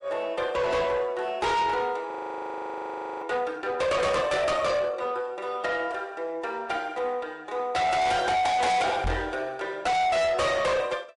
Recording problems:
codec artefacts; MP3, log-spectral distance 2 dB, nothing above 10.7 kHz
distortion; soft clipping, signal-to-distortion ratio 6 dB
frozen audio; at 2 s for 1 s
knock on the microphone; at 9 s; peak +1 dB vs average level

